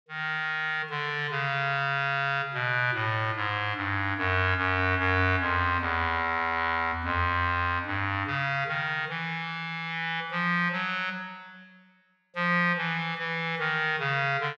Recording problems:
none

